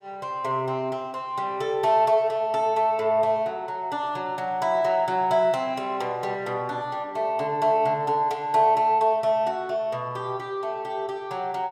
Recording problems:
none

